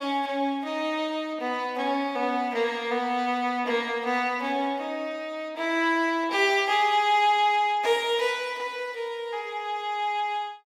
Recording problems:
none

